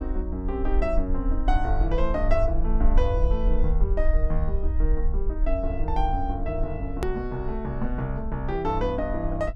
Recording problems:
rumble; below 48 Hz, strongest tone 22 Hz, SNR 0 dB
click at an edit; at 7 s

